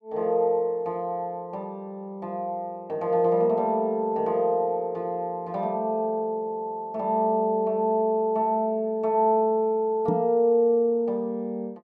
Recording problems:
microphone thump; at 10 s; peak +1 dB vs average level

